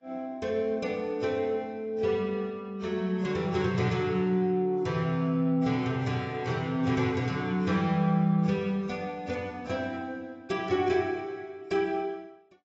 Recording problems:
lossy compression; AAC, log-spectral distance 2 dB, nothing above 7.3 kHz

